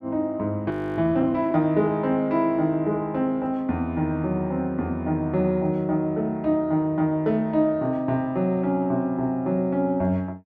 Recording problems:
audio freezing; at 0.5 s

